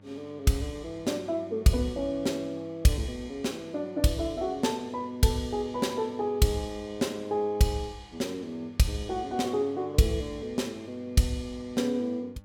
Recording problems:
hum; 50 Hz, harmonics up to 1.7 kHz, SNR 24 dB

